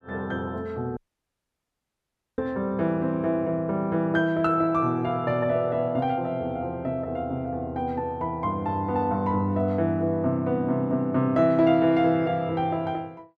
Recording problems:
audio cutting out; at 1 s for 1.5 s

